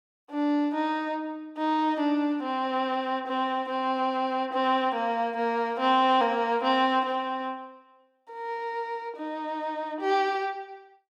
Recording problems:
none

